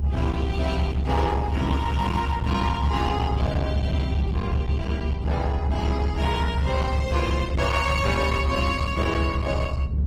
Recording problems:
codec artefacts; Opus, then Opus, log-spectral distance 2 dB, nothing above 19 kHz
distorted audio; hard clipping, signal-to-distortion ratio 11 dB
rumble; below 120 Hz, strongest tone 68 Hz, SNR 0 dB

